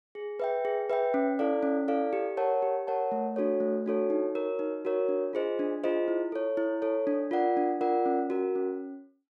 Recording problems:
none

